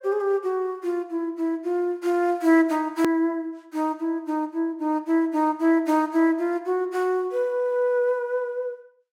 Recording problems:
hard cut with a click; at 3 s

